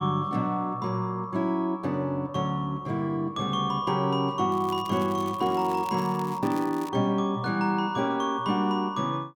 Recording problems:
crackle; from 4.5 to 7 s; loose cable, SNR 20 dB

